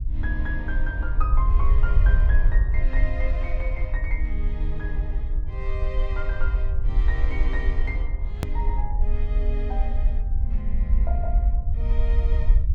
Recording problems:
rumble; below 54 Hz, SNR -10 dB
edit click; at 8.5 s

